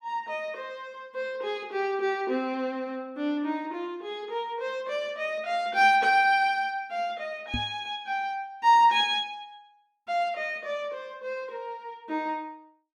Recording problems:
microphone thump; at 7.5 s; peak -1 dB vs average level

